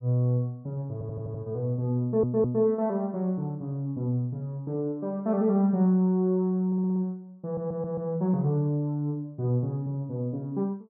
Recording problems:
audio stuttering; 4 times, first at 1 s

